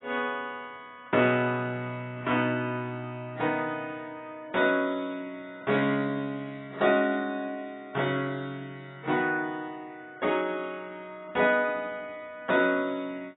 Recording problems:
codec artefacts; AAC, log-spectral distance 2 dB, nothing above 3.4 kHz

